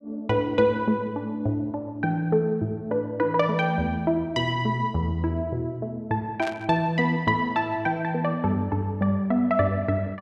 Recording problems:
burst of static; at 6.5 s; peak -7 dB vs average level

